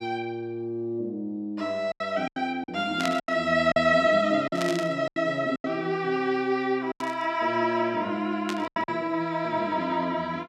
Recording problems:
lost packets; 7% of the sound replaced, filled with silence
static burst; 4 times, first at 3 s; peak 0 dB vs average level

